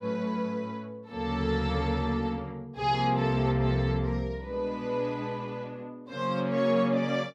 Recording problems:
none

